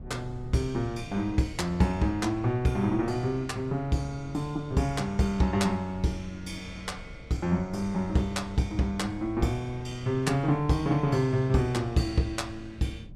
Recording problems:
wind on the microphone; below 160 Hz, SNR 17 dB

